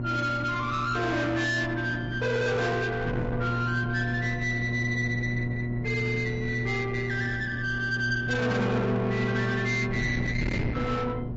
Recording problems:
treble cut off; nothing above 7.3 kHz
codec artefacts; MP3, log-spectral distance 2 dB
distorted audio; soft clipping, signal-to-distortion ratio 8 dB
electrical hum; 60 Hz, harmonics up to 720 Hz, SNR 4 dB
wind noise; below 490 Hz, SNR 9 dB

